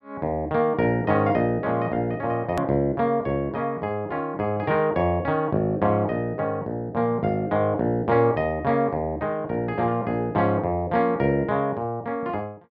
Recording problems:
hard cut with a click; at 2.5 s

